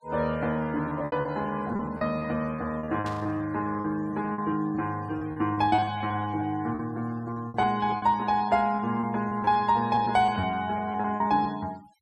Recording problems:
noise reduction artefacts; signal-to-artefact ratio 24 dB
lost packets; 13% of the sound replaced, filled with repeated pitch periods
static burst; at 3 s; peak -11 dB vs average level

